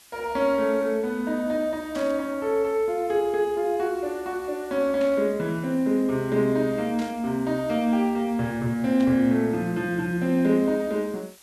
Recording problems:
hiss; slope +1 dB per octave, SNR 26 dB
burst of static; 4 times, first at 2 s; peak -12 dB vs average level

